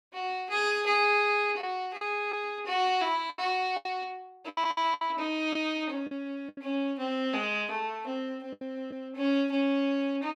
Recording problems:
lost packets; 7% of the sound replaced, filled with the last packet

